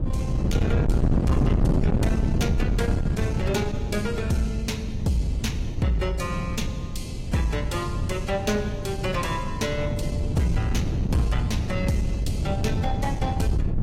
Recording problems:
lossy codec; AAC, log-spectral distance 2 dB, nothing above 16 kHz
distorted audio; soft clipping, signal-to-distortion ratio 11 dB
wind on the microphone; below 190 Hz, SNR -1 dB

